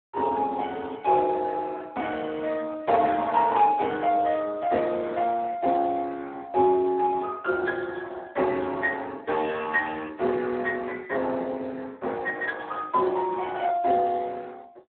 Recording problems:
phone line; 280 Hz to 3.8 kHz, Speex

